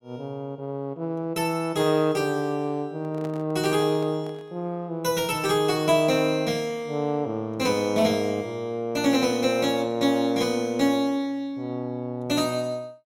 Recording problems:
microphone handling noise; from 3 to 4.5 s; peak -11 dB vs average level

